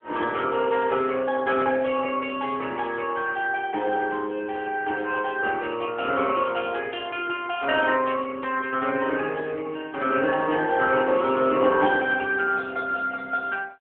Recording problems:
telephone audio; 190 Hz to 3.3 kHz, AMR-NB

